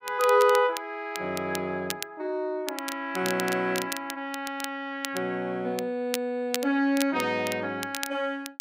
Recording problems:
crackling; vinyl, SNR 10 dB

